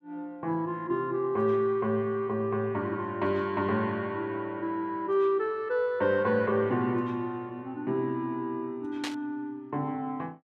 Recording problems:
burst of static; at 9 s; peak -1 dB vs average level

